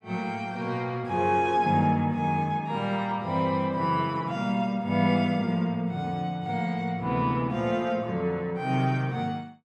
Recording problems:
none

